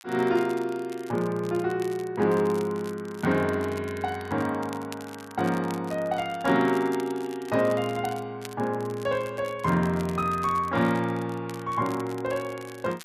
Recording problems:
crackling; vinyl, SNR 21 dB

